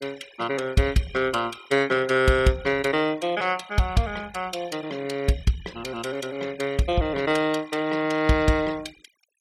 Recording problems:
noise reduction artefacts; signal-to-artefact ratio 21 dB

